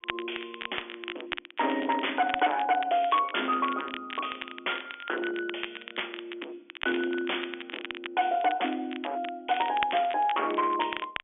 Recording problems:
phone line; 240 Hz to 3.4 kHz, G.711
distortion; hard clipping, signal-to-distortion ratio 6 dB
crackling; vinyl, SNR 10 dB

